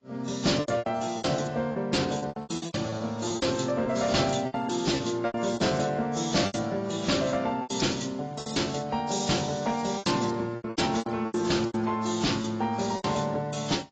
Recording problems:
lossy codec; AAC, log-spectral distance 5 dB, nothing above 7.3 kHz
distortion; hard clipping, uneven, signal-to-distortion ratio 10 dB
lost packets; 13% of the sound replaced, filled with repeated pitch periods

